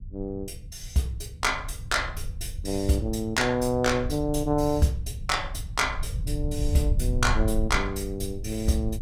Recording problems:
low-frequency rumble; below 86 Hz, SNR 7 dB

